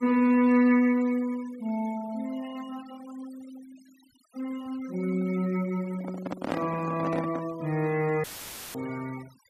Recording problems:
denoising artefacts; signal-to-artefact ratio 21 dB
handling noise; from 6 to 7.5 s; peak +1 dB vs average level
dropout; at 8 s for 0.5 s; filled with static

